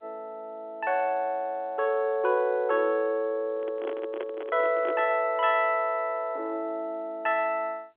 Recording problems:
telephone audio; 280 Hz to 3.9 kHz, G.711
microphone handling noise; from 3.5 to 5 s; peak -3 dB vs average level

